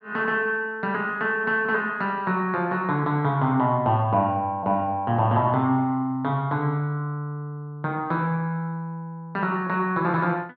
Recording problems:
none

